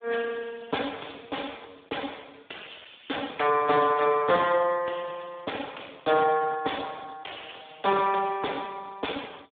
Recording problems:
phone line; 300 Hz to 3.5 kHz, Speex

